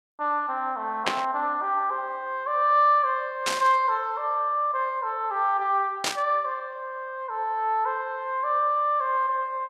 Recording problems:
burst of static; at 1 s, at 3.5 s and at 6 s; peak +4 dB vs average level

